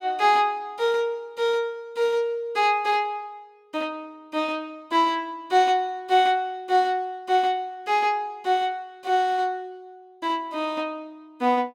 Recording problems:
none

